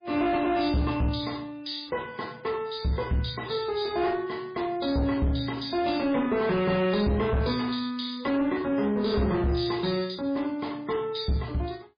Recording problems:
lossy codec; MP3, log-spectral distance 5 dB, nothing above 4.6 kHz
distorted audio; soft clipping, signal-to-distortion ratio 11 dB

